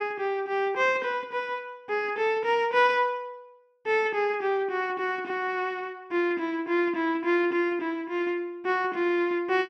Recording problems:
none

